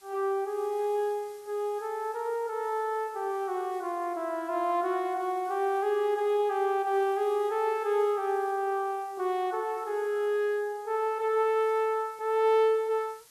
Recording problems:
hiss; slope +1 dB per octave, SNR 27 dB

